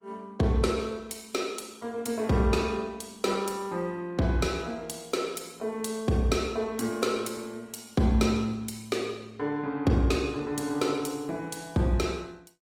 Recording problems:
lossy compression; Opus, log-spectral distance 4 dB, nothing above 19 kHz

